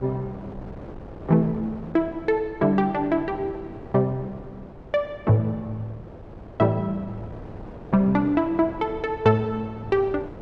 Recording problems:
wind noise; below 520 Hz, SNR 17 dB

